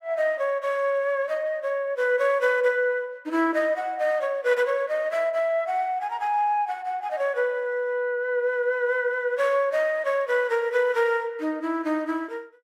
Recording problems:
none

